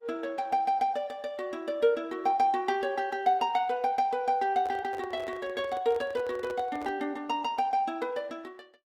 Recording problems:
codec artefacts; Opus, log-spectral distance 2 dB
handling noise; from 4.5 to 7 s; peak -8 dB vs average level

